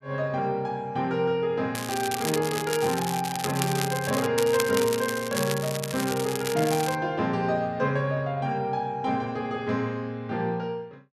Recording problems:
crackle; from 1.5 to 4.5 s and from 4.5 to 7 s; loose cable, SNR 6 dB

